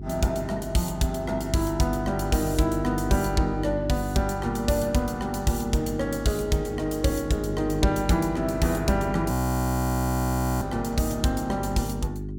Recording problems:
hum; 50 Hz, harmonics up to 400 Hz, SNR 7 dB
audio freezing; at 9.5 s for 1.5 s

